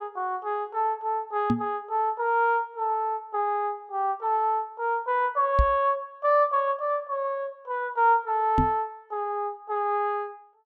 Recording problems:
microphone bump; at 1.5 s, at 5.5 s and at 8.5 s; peak +6 dB vs average level

